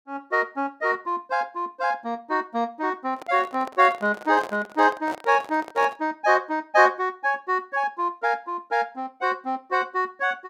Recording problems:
handling noise; from 3 to 6 s; peak -6 dB vs average level

